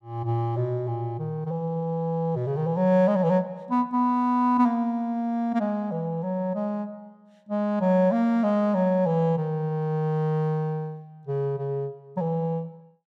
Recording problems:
none

